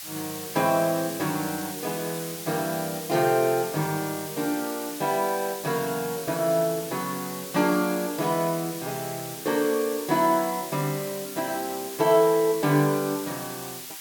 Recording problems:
background hiss; slope +3 dB per octave, SNR 10 dB

